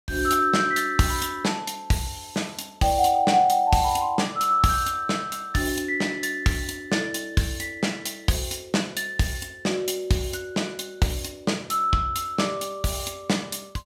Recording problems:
none

